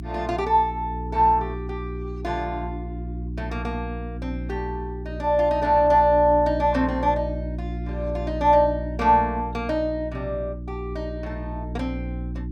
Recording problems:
electrical hum; 60 Hz, harmonics up to 360 Hz, SNR 9 dB

